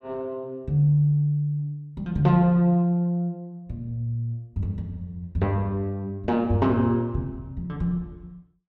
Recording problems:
none

